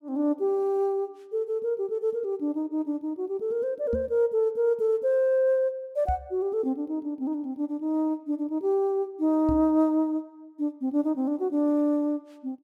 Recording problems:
microphone thump; at 4 s, at 6 s and at 9.5 s; peak -1 dB vs average level

